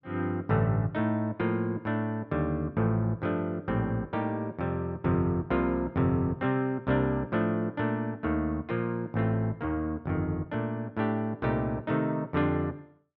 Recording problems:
none

